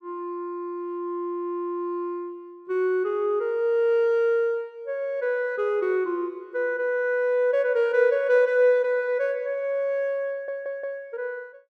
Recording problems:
stutter; at 10 s

